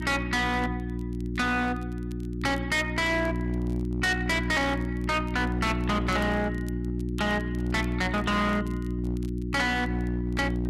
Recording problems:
distorted audio; hard clipping, signal-to-distortion ratio 7 dB
hum; 60 Hz, harmonics up to 360 Hz, SNR 3 dB
crackle; vinyl, SNR 28 dB

